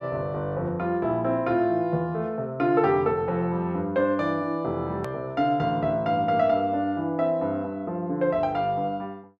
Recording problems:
edit click; at 5 s

